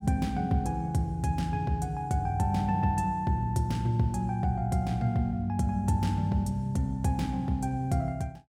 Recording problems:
none

